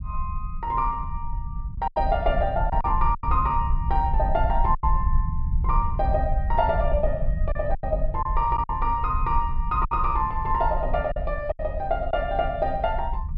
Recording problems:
treble missing; nothing above 5.5 kHz
low-frequency rumble; below 64 Hz, SNR 3 dB
lost packets; 5% of the sound replaced, filled with silence

